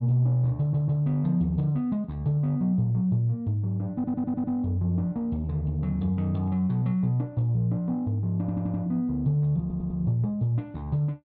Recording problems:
audio stuttering; 4 times, first at 0.5 s

